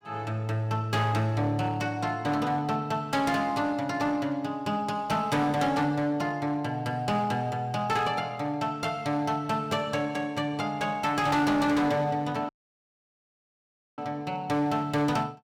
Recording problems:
distortion; hard clipping, uneven, signal-to-distortion ratio 11 dB
dropout; at 12 s for 1.5 s

